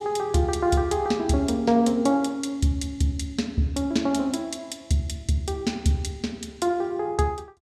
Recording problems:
none

